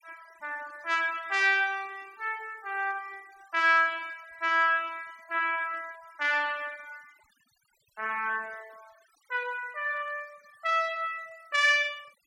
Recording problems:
noise reduction artefacts; signal-to-artefact ratio 27 dB

